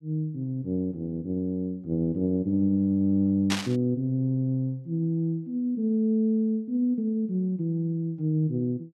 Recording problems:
static burst; at 3.5 s; peak +2 dB vs average level

